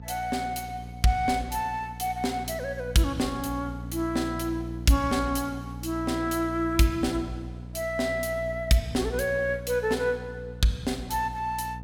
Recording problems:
mains hum; 60 Hz, harmonics up to 540 Hz, SNR 11 dB

